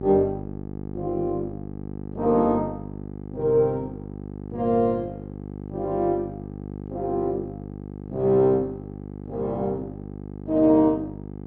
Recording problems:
hum; 50 Hz, harmonics up to 900 Hz, SNR 12 dB

